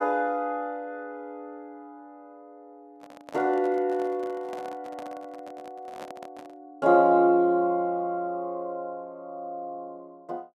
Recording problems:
handling noise; from 3 to 6.5 s; peak -10 dB vs average level

